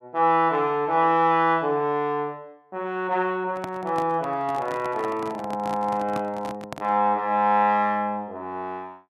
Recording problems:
microphone handling noise; from 3.5 to 7 s; peak -6 dB vs average level

